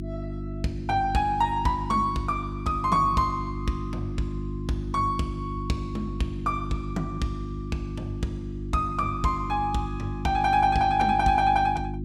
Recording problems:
electrical hum; 50 Hz, harmonics up to 350 Hz, SNR 7 dB

